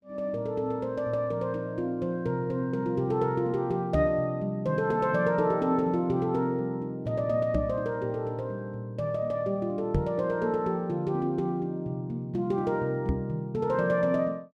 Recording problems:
knock on the microphone; 4 times, first at 4 s; peak +4 dB vs average level

